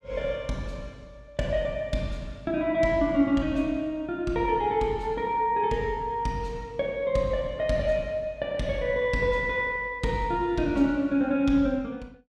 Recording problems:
none

